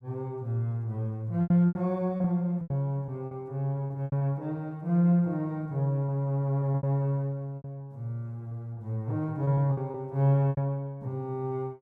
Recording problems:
packet loss; 8% of the sound replaced, filled with repeated pitch periods

